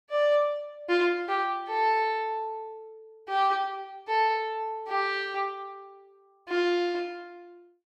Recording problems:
none

